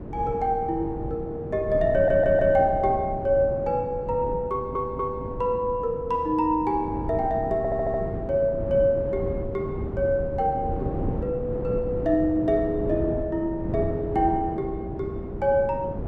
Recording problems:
wind noise; below 330 Hz, SNR 8 dB
stutter; at 2 s, at 4.5 s and at 7.5 s

